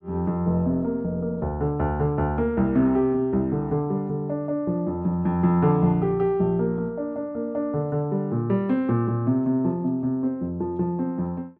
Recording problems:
none

